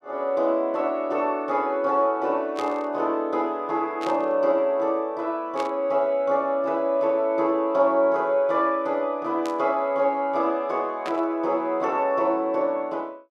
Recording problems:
burst of static; 5 times, first at 2.5 s; peak -9 dB vs average level

